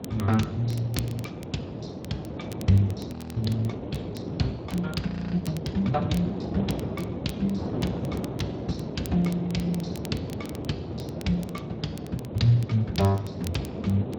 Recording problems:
codec artefacts; Speex, log-spectral distance 3 dB, nothing above 17.7 kHz
wind on the microphone; below 460 Hz, SNR 6 dB
crackling; vinyl, SNR 20 dB
frozen audio; at 3 s and at 5 s

